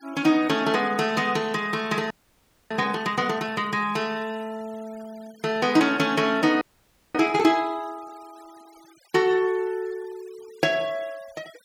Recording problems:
noise reduction artefacts; signal-to-artefact ratio 25 dB
audio freezing; at 2 s for 0.5 s and at 6.5 s for 0.5 s

